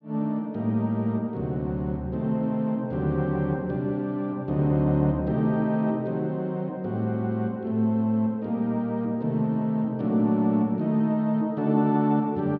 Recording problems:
treble cut off; nothing above 8 kHz

